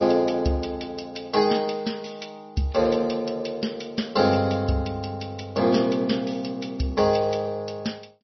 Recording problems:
codec artefacts; MP3, log-spectral distance 5 dB, nothing above 5.5 kHz
crackle; at 2.5 s; loose cable, SNR 27 dB

